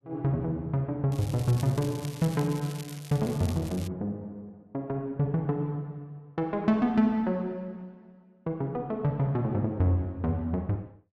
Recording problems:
crackling; from 1 to 4 s; loose cable, SNR 16 dB

